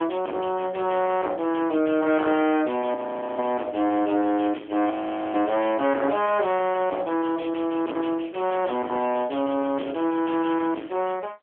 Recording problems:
phone line; 260 Hz to 3.3 kHz, AMR-NB
distortion; soft clipping, signal-to-distortion ratio 8 dB
audio freezing; at 3 s and at 5 s

